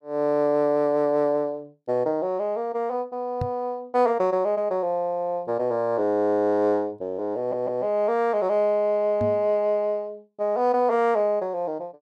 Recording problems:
knock on the microphone; at 3.5 s and at 9 s; peak -2 dB vs average level
stutter; at 7.5 s

